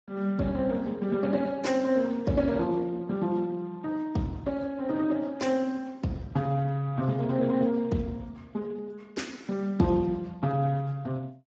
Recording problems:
lossy codec; Speex, log-spectral distance 2 dB, nothing above 7.3 kHz

